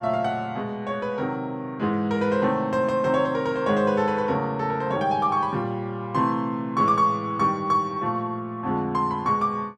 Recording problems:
none

